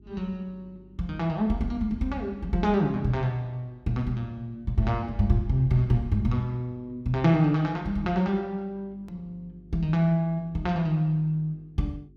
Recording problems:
hum; 50 Hz, harmonics up to 400 Hz, SNR 26 dB
edit click; at 9 s

